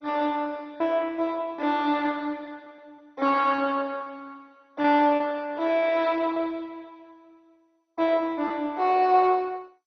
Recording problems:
lossy compression; MP2, log-spectral distance 3 dB, nothing above 5.3 kHz
packet loss; 3% of the sound replaced, filled with repeated pitch periods

